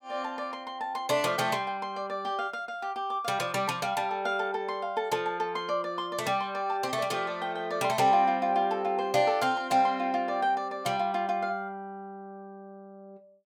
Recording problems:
none

